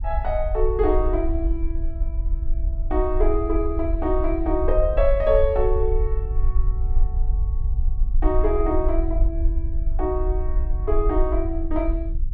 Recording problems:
low-frequency rumble; below 52 Hz, SNR 1 dB

